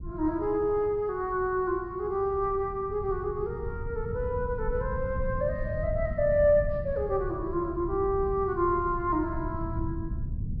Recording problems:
treble missing; nothing above 5.5 kHz
rumble; below 120 Hz, SNR 9 dB

